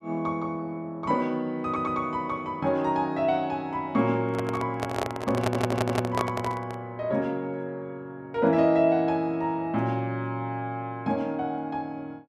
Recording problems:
stutter; at 1.5 s and at 5.5 s
microphone handling noise; from 4.5 to 7 s; peak +5 dB vs average level

